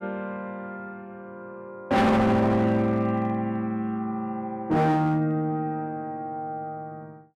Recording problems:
distortion; hard clipping, signal-to-distortion ratio 7 dB

